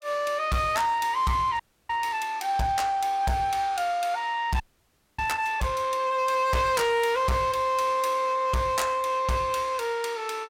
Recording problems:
distortion; hard clipping, signal-to-distortion ratio 11 dB
audio freezing; at 1.5 s and at 4.5 s for 0.5 s

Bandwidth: 16.5 kHz